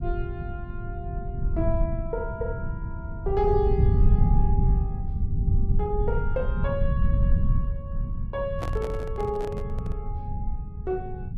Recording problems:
low-frequency rumble; below 98 Hz, SNR -4 dB
handling noise; from 8.5 to 10 s; peak +1 dB vs average level

